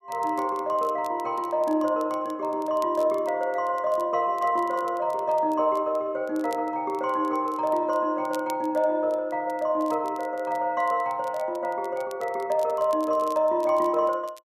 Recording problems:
crackle; vinyl, SNR 26 dB

